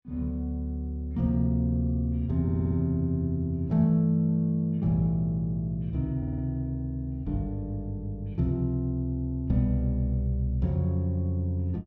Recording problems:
audio stuttering; at 2.5 s and at 6 s

